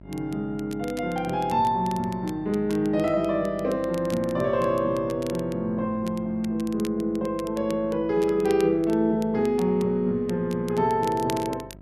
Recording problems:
electrical hum; 50 Hz, harmonics up to 700 Hz, SNR 22 dB
crackling; vinyl, SNR 21 dB

